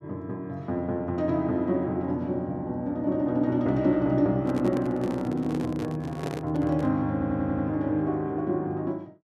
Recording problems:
microphone handling noise; from 4.5 to 7 s; peak -4 dB vs average level
audio stuttering; at 7 s

